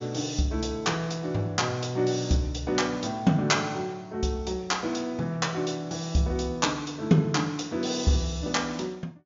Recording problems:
treble missing; nothing above 7.1 kHz

